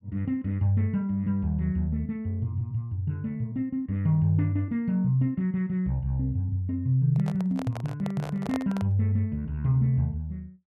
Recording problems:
handling noise; from 7 to 9 s; peak -4 dB vs average level

